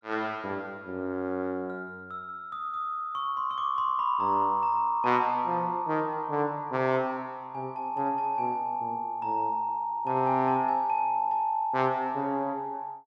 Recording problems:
none

